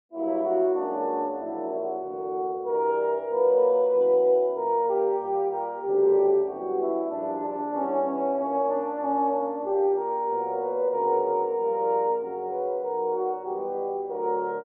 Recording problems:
none

